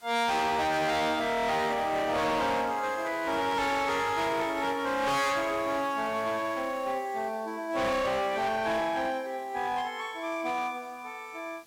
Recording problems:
distorted audio; hard clipping, uneven, signal-to-distortion ratio 7 dB
background hiss; slope -1 dB per octave, SNR 25 dB

